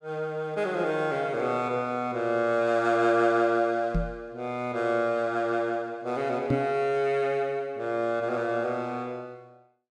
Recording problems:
microphone bump; at 4 s and at 6.5 s; peak +4 dB vs average level

